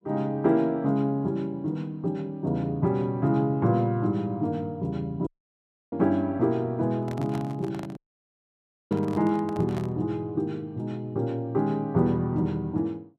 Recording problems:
audio cutting out; at 5.5 s for 0.5 s and at 8 s for 1 s
microphone handling noise; from 7 to 10 s; peak -7 dB vs average level

